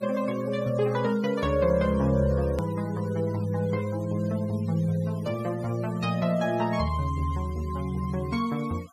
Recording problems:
denoising artefacts; signal-to-artefact ratio 22 dB
click at an edit; at 2.5 s

